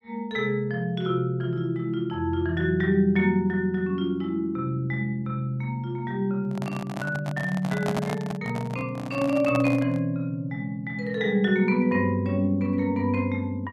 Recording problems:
handling noise; from 6.5 to 10 s; peak 0 dB vs average level

